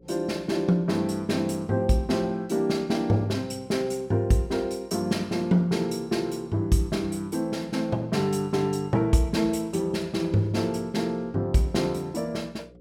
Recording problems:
electrical hum; 60 Hz, harmonics up to 540 Hz, SNR 27 dB

